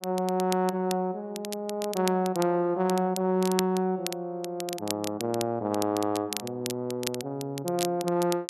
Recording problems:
crackle; vinyl, SNR 10 dB

